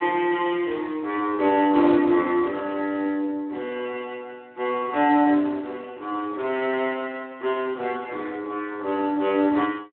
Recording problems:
telephone audio; 240 Hz to 3.8 kHz, Speex

